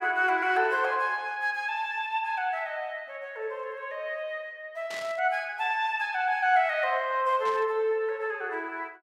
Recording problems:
burst of static; at 5 s and at 7.5 s; peak -9 dB vs average level

